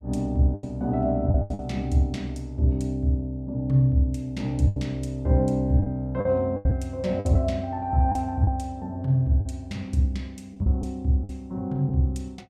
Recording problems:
lost packets; 6% of the sound replaced, filled with the last packet

